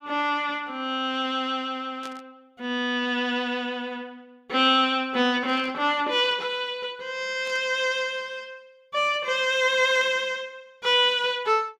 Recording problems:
static burst; 4 times, first at 2 s; peak -13 dB vs average level

